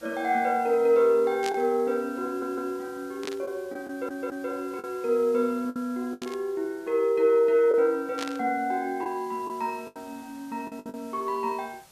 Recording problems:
hiss; SNR 26 dB
lost packets; 5% of the sound replaced, filled with the last packet
static burst; 4 times, first at 1.5 s; peak -3 dB vs average level
audio stuttering; at 2.5 s and at 4 s

